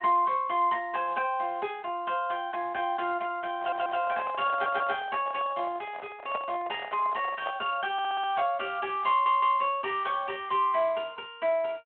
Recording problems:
telephone audio; 240 Hz to 3.5 kHz, Speex
handling noise; from 3.5 to 7.5 s; peak -2 dB vs average level
audio stuttering; 4 times, first at 3.5 s

